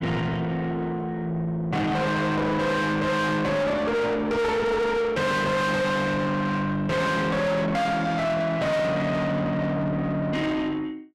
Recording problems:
distorted audio; soft clipping, signal-to-distortion ratio 5 dB

